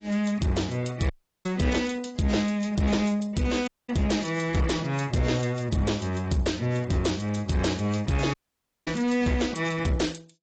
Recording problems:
codec artefacts; AAC, log-spectral distance 5 dB, nothing above 7.6 kHz
distortion; hard clipping, uneven, signal-to-distortion ratio 9 dB
audio cutting out; at 1 s, at 3.5 s and at 8.5 s for 0.5 s

